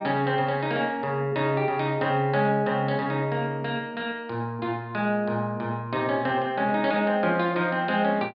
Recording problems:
treble cut off; nothing above 5.5 kHz

